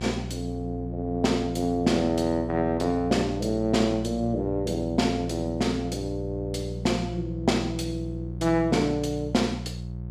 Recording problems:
mains hum; 60 Hz, harmonics up to 540 Hz, SNR 8 dB

